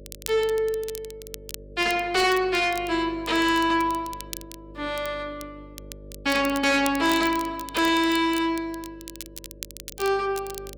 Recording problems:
distorted audio; soft clipping, signal-to-distortion ratio 11 dB
hum; 50 Hz, harmonics up to 600 Hz, SNR 22 dB
crackle; vinyl, SNR 16 dB

